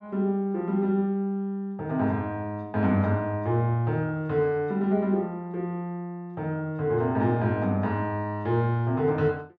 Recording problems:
none

